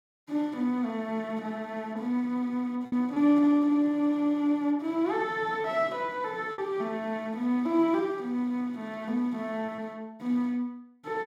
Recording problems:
packet loss; 2% of the sound replaced, filled with repeated pitch periods

